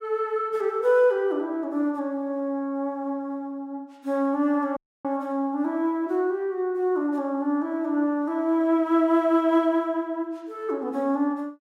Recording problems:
dropout; at 5 s

